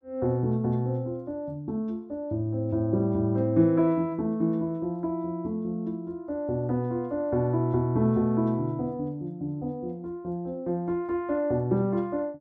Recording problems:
none

